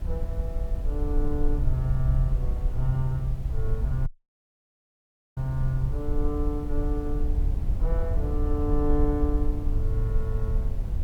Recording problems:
background hiss; SNR 25 dB
rumble; below 62 Hz, SNR -3 dB
audio cutting out; at 4 s for 1.5 s

